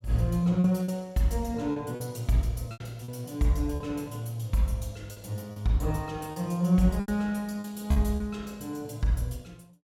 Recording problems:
lost packets; 7% of the sound replaced, filled with repeated pitch periods

